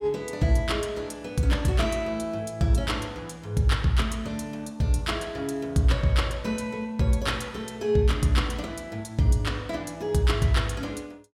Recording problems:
none

